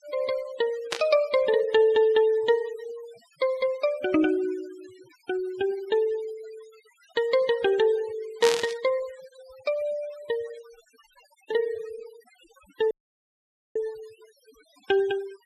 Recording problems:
denoising artefacts; signal-to-artefact ratio 21 dB
static burst; at 1 s and at 8.5 s; peak +2 dB vs average level
audio cutting out; at 13 s for 1 s

